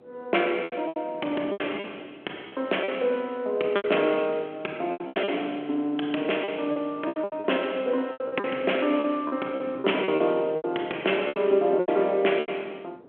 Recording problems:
telephone audio; 280 Hz to 3.3 kHz, G.726
wind on the microphone; below 540 Hz, SNR 20 dB
lost packets; 13% of the sound replaced, filled with repeated pitch periods

